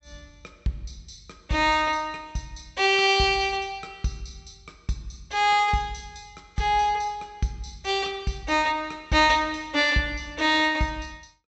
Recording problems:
low-pass filter; nothing above 7.9 kHz

